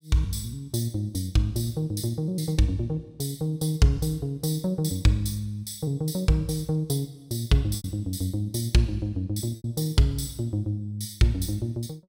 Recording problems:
packet loss; 1.3% of the sound replaced, filled with repeated pitch periods

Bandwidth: 16 kHz